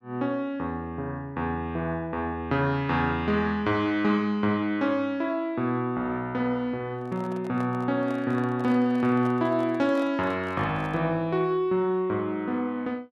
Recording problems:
microphone handling noise; from 7 to 11 s; peak -11 dB vs average level

